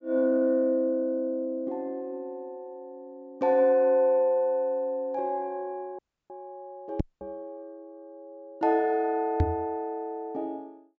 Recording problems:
low-pass filter; nothing above 8 kHz
audio cutting out; at 6 s and at 7 s
microphone thump; at 7 s and at 9.5 s; peak +6 dB vs average level

